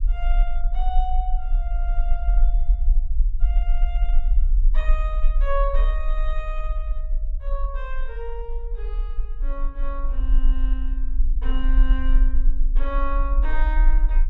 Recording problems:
low-frequency rumble; below 40 Hz, strongest tone 24 Hz, SNR -9 dB

